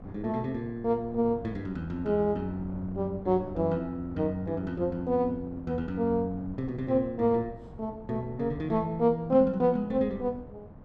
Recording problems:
wind on the microphone; below 290 Hz, SNR 17 dB

